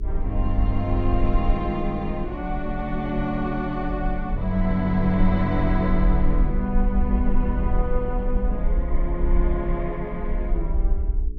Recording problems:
electrical hum; 60 Hz, harmonics up to 420 Hz, SNR 17 dB
low-frequency rumble; below 50 Hz, SNR 2 dB

